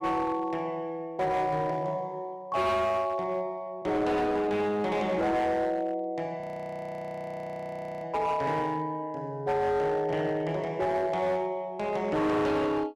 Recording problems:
distorted audio; hard clipping, signal-to-distortion ratio 10 dB
audio freezing; at 6.5 s for 1.5 s

